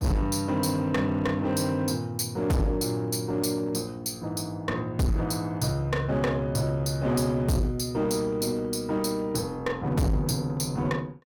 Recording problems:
distorted audio; hard clipping, uneven, signal-to-distortion ratio 6 dB

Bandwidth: 17.5 kHz